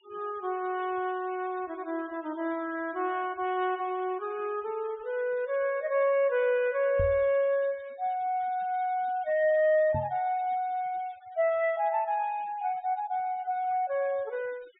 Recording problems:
treble missing; nothing above 4 kHz
denoising artefacts; signal-to-artefact ratio 26 dB
microphone thump; at 7 s and at 10 s; peak -1 dB vs average level

